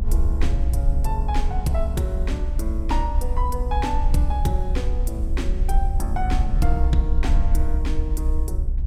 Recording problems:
rumble; below 64 Hz, SNR -4 dB

